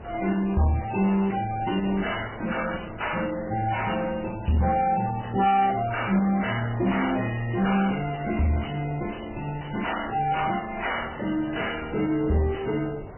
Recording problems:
lossy compression; MP3, then Vorbis, log-spectral distance 8 dB, nothing above 2.9 kHz
distorted audio; soft clipping, signal-to-distortion ratio 7 dB
wind noise; below 700 Hz, SNR 17 dB

